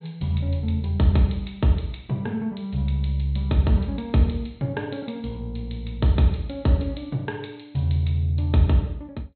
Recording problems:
treble cut off; nothing above 4.1 kHz

